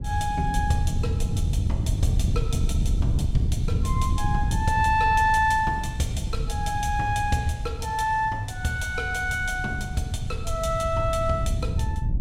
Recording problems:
wind noise; below 110 Hz, SNR 2 dB

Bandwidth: 16 kHz